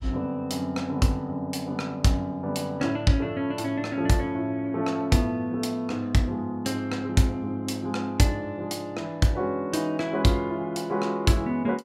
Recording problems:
none

